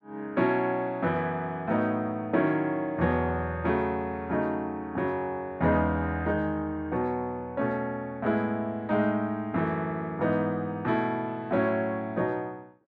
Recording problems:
none

